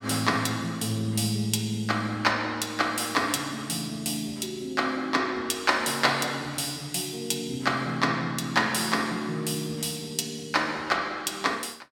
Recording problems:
none

